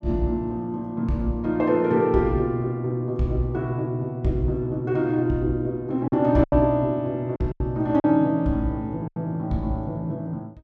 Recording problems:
lost packets; 3% of the sound replaced, filled with silence

